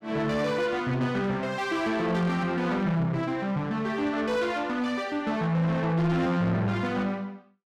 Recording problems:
distorted audio; soft clipping, signal-to-distortion ratio 11 dB

